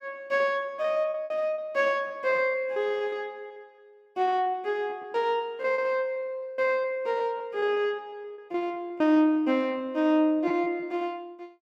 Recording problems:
packet loss; 13% of the sound replaced, filled with repeated pitch periods

